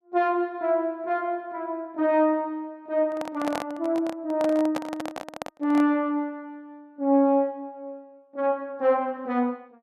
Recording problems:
handling noise; from 3 to 6 s; peak -1 dB vs average level

